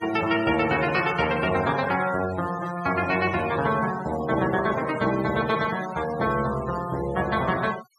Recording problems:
denoising artefacts; signal-to-artefact ratio 13 dB

